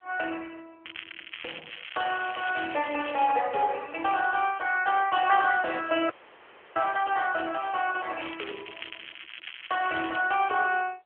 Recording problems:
telephone audio; 300 Hz to 3.3 kHz, AMR-NB
crackling; from 1 to 3.5 s and from 8 to 10 s; loose cable, SNR 14 dB
dropout; at 6 s for 0.5 s

